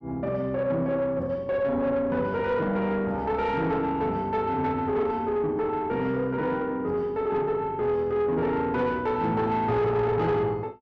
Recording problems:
distorted audio; soft clipping, signal-to-distortion ratio 11 dB

